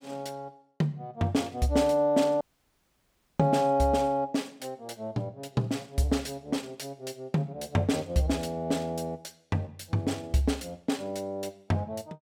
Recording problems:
dropout; at 2.5 s for 1 s

